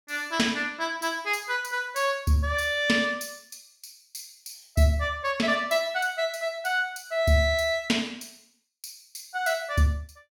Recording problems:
none

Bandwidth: 18.5 kHz